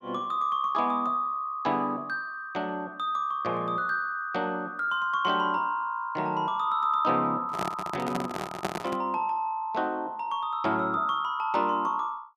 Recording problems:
handling noise; from 7.5 to 9 s; peak +2 dB vs average level

